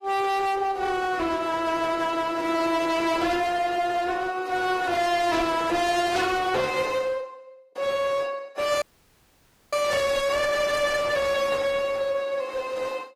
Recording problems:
codec artefacts; AAC, then AAC, log-spectral distance 3 dB
distorted audio; hard clipping, uneven, signal-to-distortion ratio 5 dB
audio cutting out; at 9 s for 1 s

